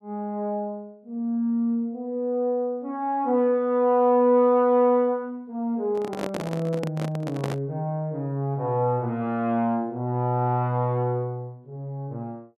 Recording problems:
handling noise; from 6 to 7.5 s; peak -3 dB vs average level

